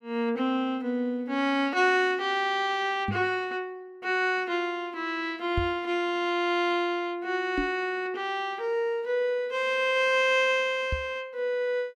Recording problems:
knock on the microphone; 4 times, first at 3 s; peak +1 dB vs average level

